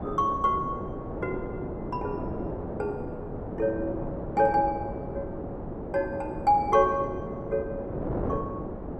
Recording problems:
wind noise; below 550 Hz, SNR 6 dB

